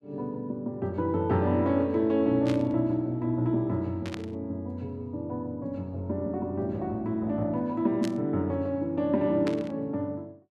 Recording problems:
static burst; 4 times, first at 2.5 s; peak -5 dB vs average level

